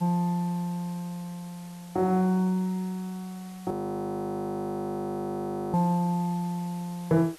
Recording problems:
background hiss; slope -1 dB per octave, SNR 22 dB
audio freezing; at 3.5 s for 2 s

